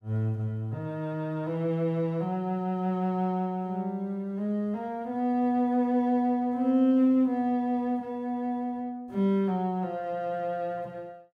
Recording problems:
none

